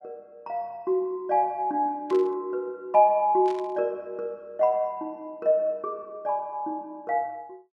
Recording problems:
static burst; at 2 s and at 3.5 s; peak -14 dB vs average level

